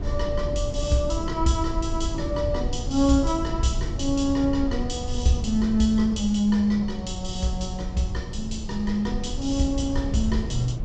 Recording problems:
treble cut off; nothing above 8 kHz
low-frequency rumble; below 98 Hz, SNR 7 dB

